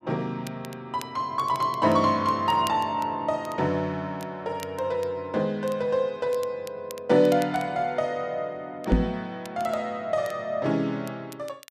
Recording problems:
crackle; vinyl, SNR 21 dB
microphone thump; at 9 s; peak +8 dB vs average level

